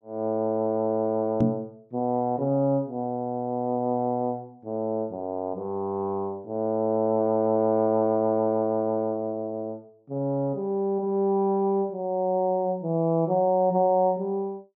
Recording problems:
microphone thump; at 1.5 s; peak +7 dB vs average level

